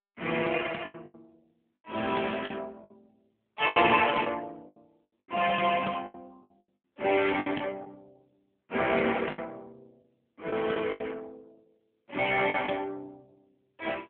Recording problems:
telephone audio; 240 Hz to 3.4 kHz, AMR-NB
packet loss; 9% of the sound replaced, filled with the last packet

